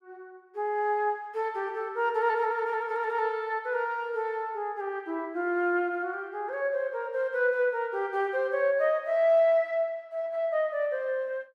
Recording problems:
none

